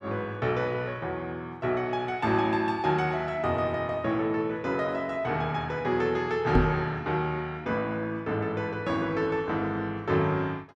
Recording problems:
microphone thump; at 6.5 s; peak +7 dB vs average level

